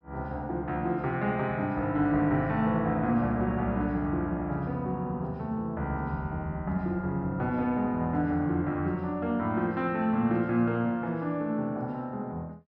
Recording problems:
none

